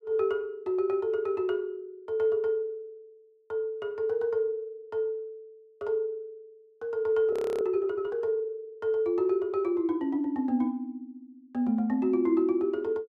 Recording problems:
audio freezing; at 7.5 s

